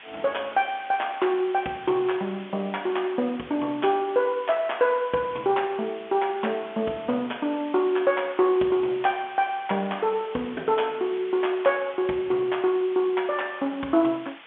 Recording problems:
phone line; 190 Hz to 3.5 kHz, G.711
background hiss; SNR 19 dB

